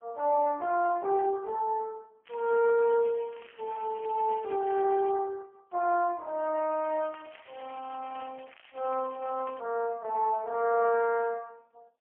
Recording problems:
telephone audio; 320 Hz to 2.1 kHz, AMR-NB, then MP3
crackling; from 2.5 to 5 s and from 7 to 9.5 s; loose cable, SNR 24 dB

